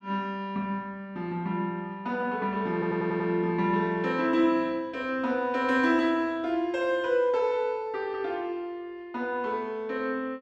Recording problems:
stutter; at 2.5 s

